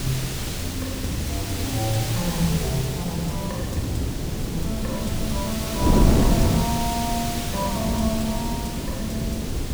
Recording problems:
background hiss; slope 0 dB per octave, SNR 4 dB
wind noise; below 280 Hz, SNR -1 dB

